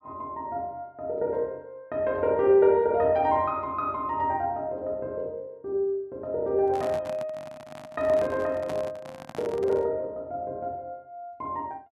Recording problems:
microphone handling noise; from 6.5 to 10 s; peak -6 dB vs average level

